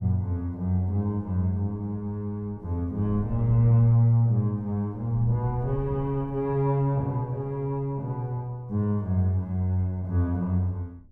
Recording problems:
wind on the microphone; below 110 Hz, SNR 18 dB

